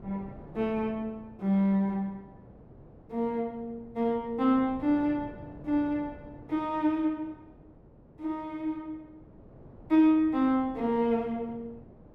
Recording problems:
wind noise; below 420 Hz, SNR 21 dB

